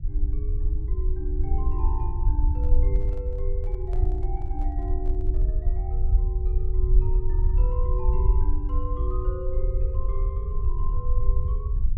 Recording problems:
rumble; below 58 Hz, SNR -12 dB
handling noise; from 2.5 to 5.5 s; peak -5 dB vs average level

